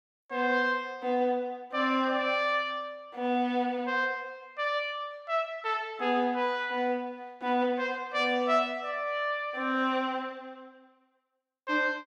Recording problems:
none

